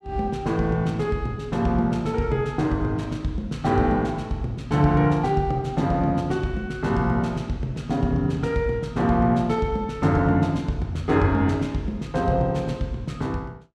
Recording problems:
none

